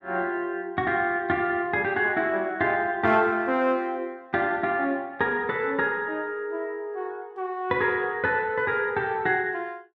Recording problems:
none

